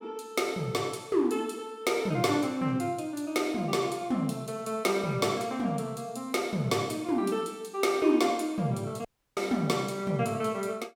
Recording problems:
audio cutting out; at 9 s

